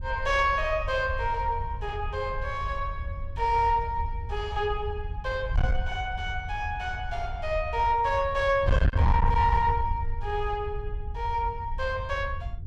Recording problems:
distortion; soft clipping, signal-to-distortion ratio 11 dB
wind noise; below 86 Hz, SNR 5 dB

